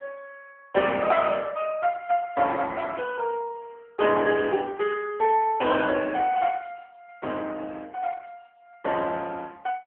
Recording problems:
telephone audio; 300 Hz to 3 kHz, AMR-NB

